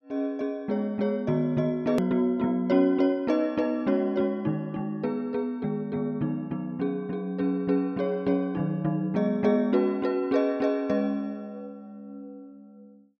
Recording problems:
edit click; at 2 s

